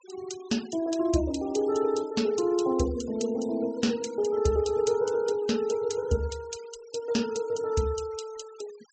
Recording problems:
treble missing; nothing above 8 kHz
noise reduction artefacts; signal-to-artefact ratio 20 dB

